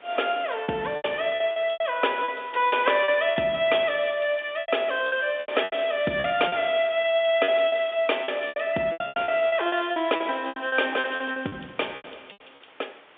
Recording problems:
phone line; 220 Hz to 3.6 kHz, G.711
hiss; SNR 27 dB
packet loss; 14% of the sound replaced, filled with repeated pitch periods

